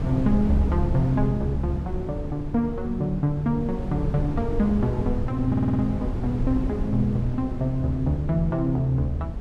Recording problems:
wind on the microphone; below 150 Hz, SNR 6 dB
audio stuttering; at 5.5 s

